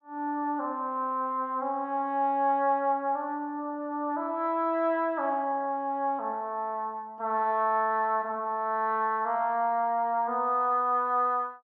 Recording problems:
none

